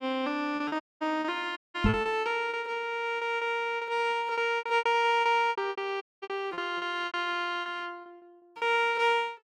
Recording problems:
lost packets; 14% of the sound replaced, filled with repeated pitch periods
dropout; at 1 s, at 1.5 s and at 6 s
microphone bump; at 2 s; peak +7 dB vs average level

